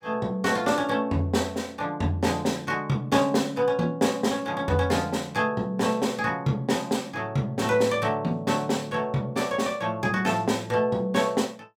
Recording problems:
none

